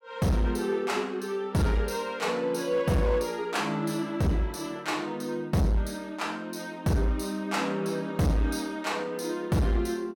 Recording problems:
distortion; hard clipping, signal-to-distortion ratio 8 dB

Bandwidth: 17 kHz